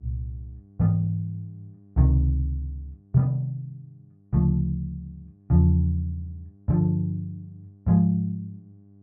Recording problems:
hum; 50 Hz, harmonics up to 700 Hz, SNR 29 dB

